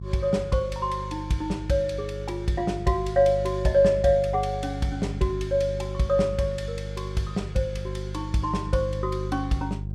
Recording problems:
mains hum; 50 Hz, harmonics up to 400 Hz, SNR 8 dB

